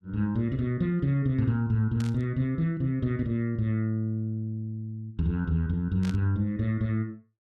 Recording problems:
static burst; at 2 s and at 6 s; peak -10 dB vs average level

